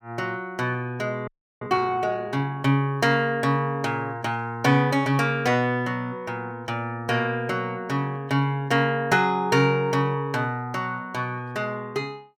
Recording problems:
frozen audio; at 1.5 s

